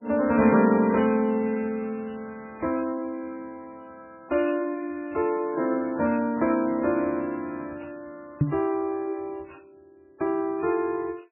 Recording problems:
lossy codec; MP3, log-spectral distance 2 dB, nothing above 2.4 kHz
knock on the microphone; at 8.5 s; peak +7 dB vs average level

